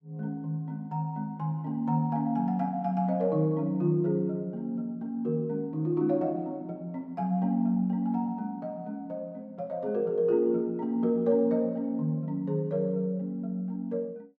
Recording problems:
none

